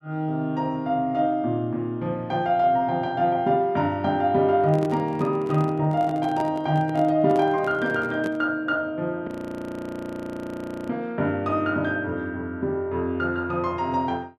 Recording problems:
microphone handling noise; from 4.5 to 8.5 s; peak -5 dB vs average level
frozen audio; at 9.5 s for 1.5 s

